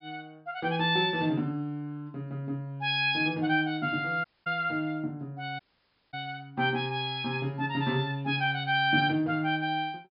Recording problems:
treble missing; nothing above 5.5 kHz
dropout; at 4.5 s and at 5.5 s for 0.5 s

